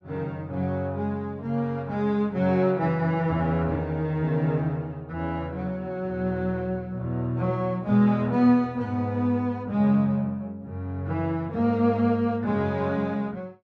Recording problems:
none

